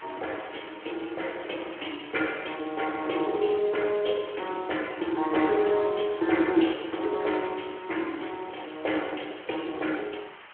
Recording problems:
phone line; 260 Hz to 3.2 kHz, Speex
hiss; SNR 17 dB

